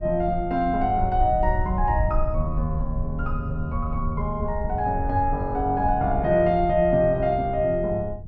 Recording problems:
rumble; below 80 Hz, SNR 7 dB

